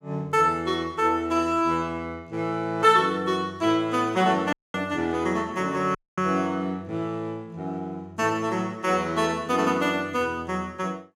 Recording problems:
audio cutting out; at 4.5 s and at 6 s

